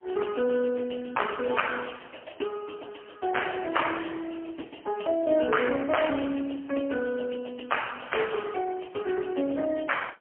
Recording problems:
phone line; 170 Hz to 3.1 kHz, AMR-NB, then MP3

